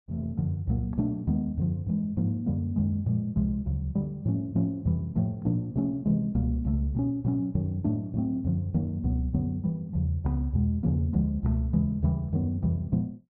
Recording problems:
none

